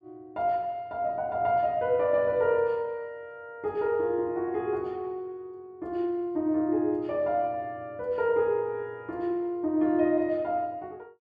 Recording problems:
none

